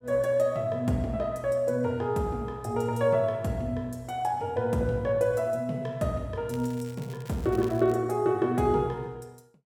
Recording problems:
crackling; from 6.5 to 8 s; loose cable, SNR 24 dB

